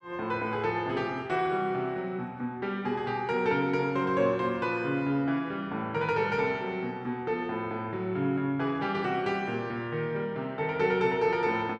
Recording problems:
none

